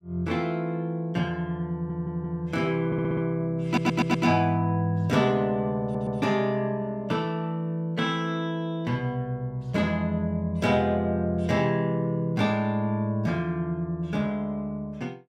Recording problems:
audio stuttering; 4 times, first at 1.5 s

